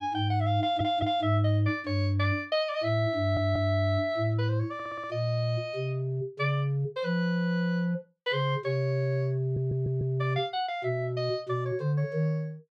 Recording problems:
audio stuttering; 4 times, first at 0.5 s

